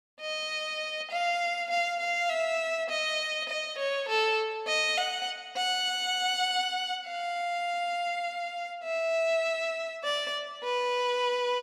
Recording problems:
none

